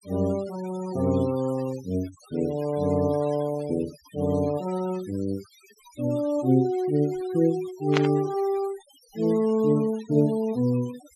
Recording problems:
noise reduction artefacts; signal-to-artefact ratio 21 dB
static burst; at 8 s; peak +3 dB vs average level

